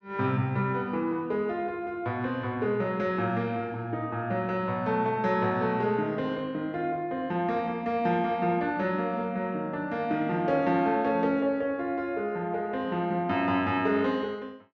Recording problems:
none

